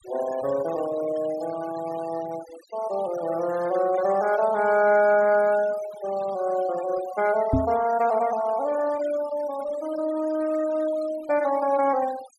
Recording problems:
noise reduction artefacts; signal-to-artefact ratio 17 dB
knock on the microphone; at 7.5 s; peak +5 dB vs average level

